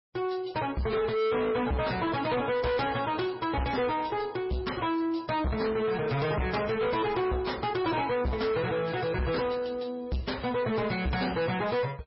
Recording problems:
lossy codec; MP3, log-spectral distance 5 dB, nothing above 5.5 kHz
distortion; soft clipping, signal-to-distortion ratio 6 dB

